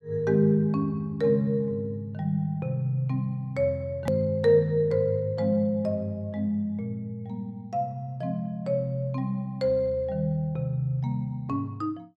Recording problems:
edit click; at 4 s

